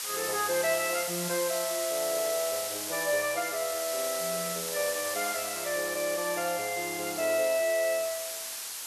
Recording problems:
hiss; slope +2 dB per octave, SNR 3 dB

